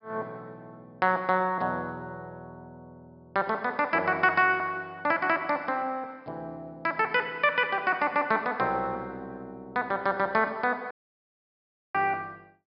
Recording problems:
treble missing; nothing above 5.5 kHz
audio cutting out; at 11 s for 1 s

